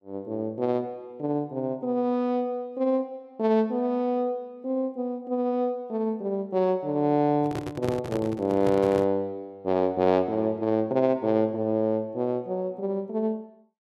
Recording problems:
microphone handling noise; from 7.5 to 9 s; peak -1 dB vs average level

